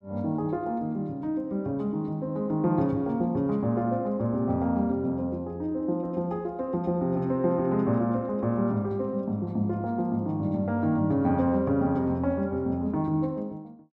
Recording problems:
none

